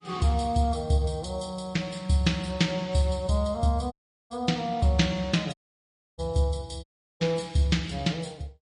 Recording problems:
lossy codec; MP3, log-spectral distance 2 dB, nothing above 10.1 kHz
audio cutting out; at 4 s, at 5.5 s for 0.5 s and at 7 s

